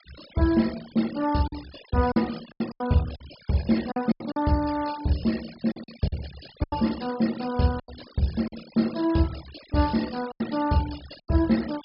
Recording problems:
treble cut off; nothing above 5.5 kHz
noise reduction artefacts; signal-to-artefact ratio 17 dB
packet loss; 8% of the sound replaced, filled with silence

